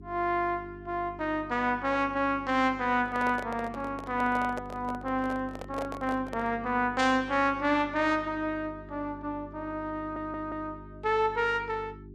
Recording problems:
electrical hum; 50 Hz, harmonics up to 400 Hz, SNR 17 dB
microphone handling noise; from 3 to 6.5 s; peak -4 dB vs average level
audio stuttering; at 10 s

